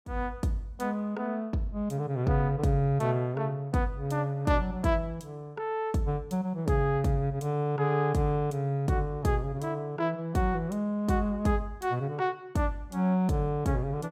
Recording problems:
none

